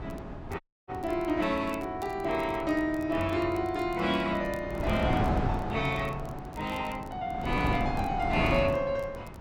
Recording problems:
wind on the microphone; below 580 Hz, SNR 5 dB
crackle; vinyl, SNR 27 dB
audio cutting out; at 0.5 s

